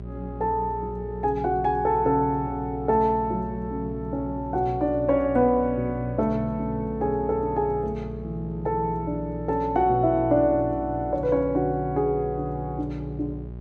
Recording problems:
hum; 60 Hz, harmonics up to 600 Hz, SNR 12 dB

